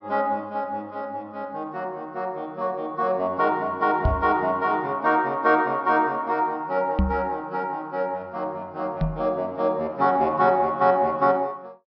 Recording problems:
treble cut off; nothing above 5.7 kHz
knock on the microphone; at 4 s, at 7 s and at 9 s; peak +5 dB vs average level

